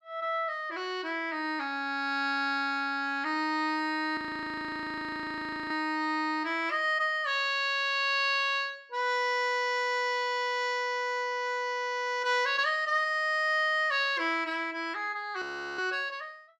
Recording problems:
frozen audio; at 4 s for 1.5 s and at 15 s

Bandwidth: 13.5 kHz